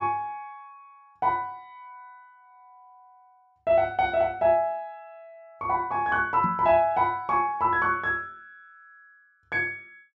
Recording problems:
knock on the microphone; at 6.5 s; peak -2 dB vs average level

